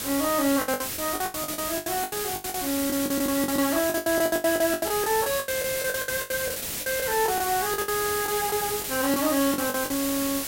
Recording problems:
hiss; SNR 3 dB
lost packets; 20% of the sound replaced, filled with the last packet

